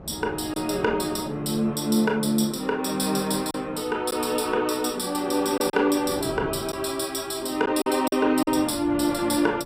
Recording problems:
wind noise; below 500 Hz, SNR 18 dB
lost packets; 3% of the sound replaced, filled with silence

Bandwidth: 15.5 kHz